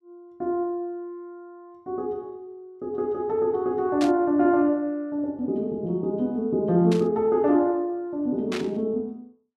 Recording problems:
static burst; at 4 s, at 7 s and at 8.5 s; peak -5 dB vs average level

